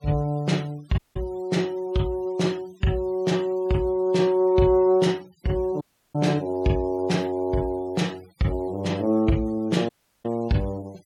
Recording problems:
noise reduction artefacts; signal-to-artefact ratio 26 dB
audio cutting out; at 1 s, at 6 s and at 10 s

